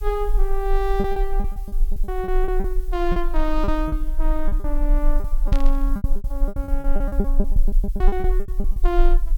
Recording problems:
hiss; slope +3 dB per octave, SNR 24 dB
low-frequency rumble; below 36 Hz, strongest tone 22 Hz, SNR -3 dB
packet loss; 16% of the sound replaced, filled with repeated pitch periods
burst of static; at 5.5 s; peak -5 dB vs average level

